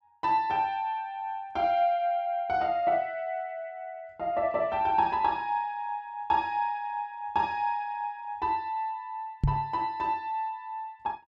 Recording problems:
knock on the microphone; at 9.5 s; peak +6 dB vs average level

